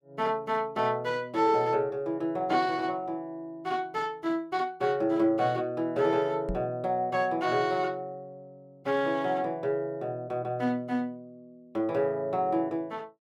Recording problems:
knock on the microphone; at 6.5 s; peak -2 dB vs average level

